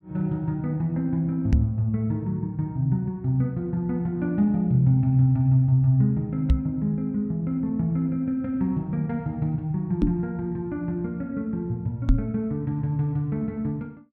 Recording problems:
knock on the microphone; 4 times, first at 1.5 s; peak +8 dB vs average level

